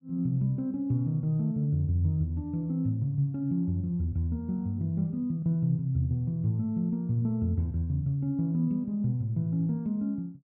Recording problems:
none

